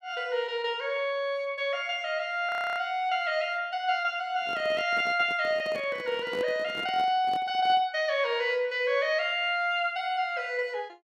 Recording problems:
frozen audio; at 2.5 s
microphone handling noise; from 4.5 to 8 s; peak -7 dB vs average level

